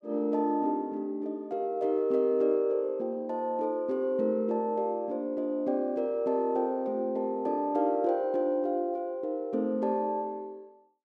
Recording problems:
none

